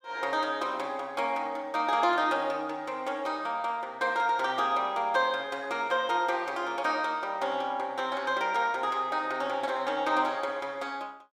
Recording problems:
none

